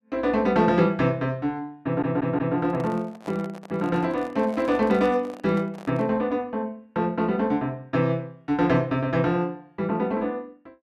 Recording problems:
audio stuttering; at 2 s
microphone handling noise; from 2 to 6 s; peak -11 dB vs average level

